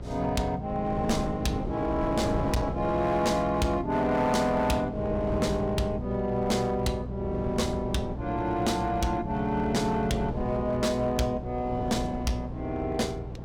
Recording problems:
distorted audio; hard clipping, signal-to-distortion ratio 12 dB
hum; 60 Hz, harmonics up to 720 Hz, SNR 11 dB
wind on the microphone; below 450 Hz, SNR 10 dB

